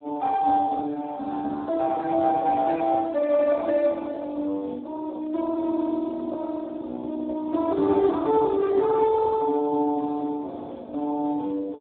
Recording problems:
telephone audio; 260 Hz to 2 kHz, Speex

